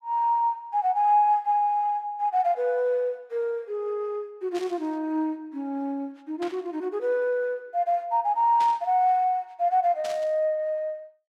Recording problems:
burst of static; 4 times, first at 4.5 s; peak -10 dB vs average level

